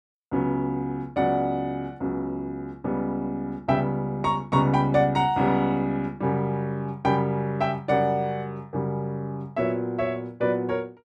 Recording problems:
none

